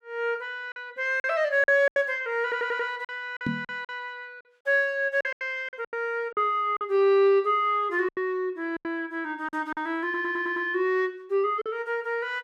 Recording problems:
lost packets; 9% of the sound replaced, filled with silence
audio stuttering; at 2.5 s and at 10 s
microphone thump; at 3.5 s; peak 0 dB vs average level

